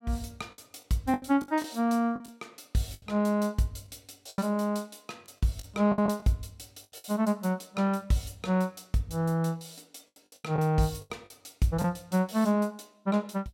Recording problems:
lost packets; 8% of the sound replaced, filled with the last packet

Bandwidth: 16.5 kHz